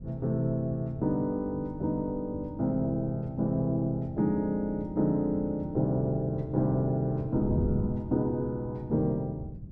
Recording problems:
wind noise; below 170 Hz, SNR 11 dB

